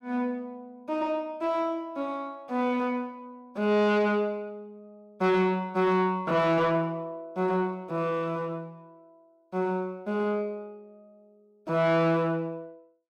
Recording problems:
distortion; soft clipping, signal-to-distortion ratio 11 dB

